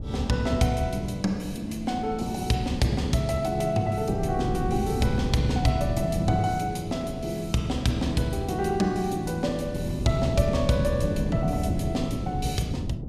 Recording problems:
wind on the microphone; below 200 Hz, SNR 6 dB

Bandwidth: 15 kHz